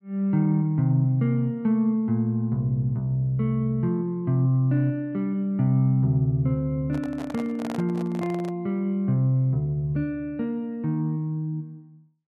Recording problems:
handling noise; from 7 to 8.5 s; peak -7 dB vs average level

